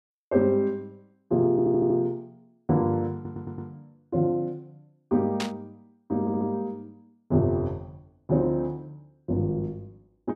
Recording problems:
audio stuttering; at 1.5 s, at 3 s and at 6 s
static burst; at 5.5 s; peak -1 dB vs average level

